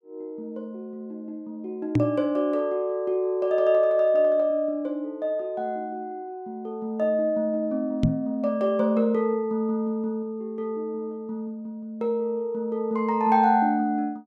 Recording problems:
microphone thump; at 2 s and at 8 s; peak +7 dB vs average level

